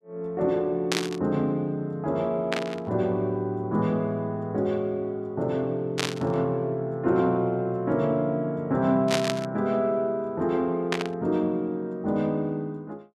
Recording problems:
static burst; 5 times, first at 1 s; peak +4 dB vs average level

